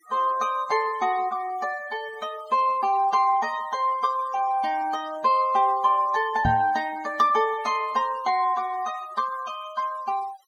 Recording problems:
denoising artefacts; signal-to-artefact ratio 21 dB
microphone thump; at 6.5 s; peak +1 dB vs average level

